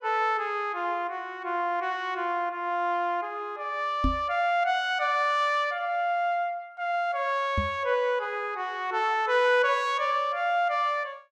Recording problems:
knock on the microphone; at 4 s and at 7.5 s; peak +3 dB vs average level

